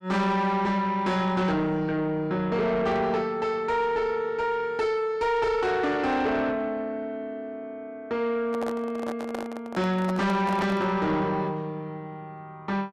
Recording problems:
distorted audio; soft clipping, signal-to-distortion ratio 10 dB
microphone handling noise; from 8.5 to 11 s; peak -4 dB vs average level

